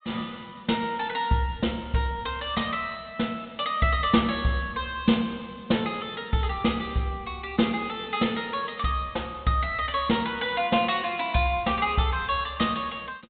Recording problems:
treble missing; nothing above 4 kHz

